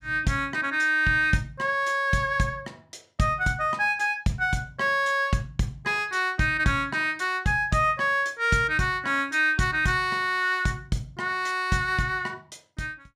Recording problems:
none

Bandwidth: 14.5 kHz